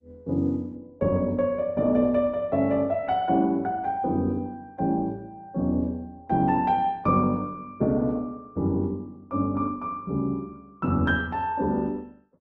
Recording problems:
lossy codec; Opus, log-spectral distance 2 dB

